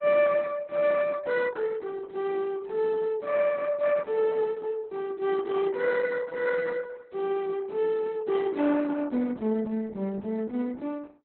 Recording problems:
lossy codec; Opus, log-spectral distance 3 dB, nothing above 4 kHz

